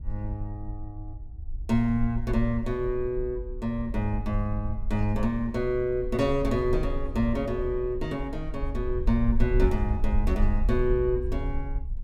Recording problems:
low-frequency rumble; below 56 Hz, SNR 5 dB

